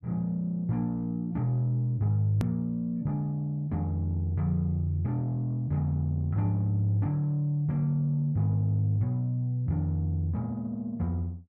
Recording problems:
hard cut with a click; at 2.5 s

